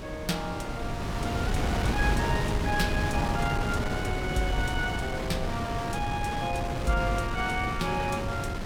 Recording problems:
wind on the microphone; below 490 Hz, SNR 0 dB

